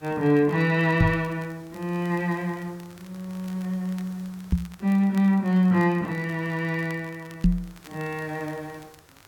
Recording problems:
background hiss; SNR 27 dB
crackle; vinyl, SNR 27 dB
microphone bump; at 1 s, at 4.5 s and at 7.5 s; peak +8 dB vs average level

